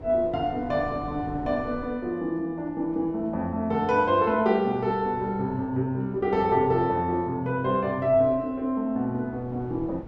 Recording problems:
wind noise; below 430 Hz, SNR 19 dB

